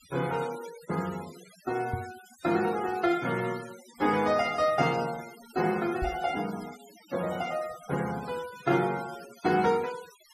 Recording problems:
denoising artefacts; signal-to-artefact ratio 17 dB
microphone thump; at 2 s and at 6 s; peak 0 dB vs average level

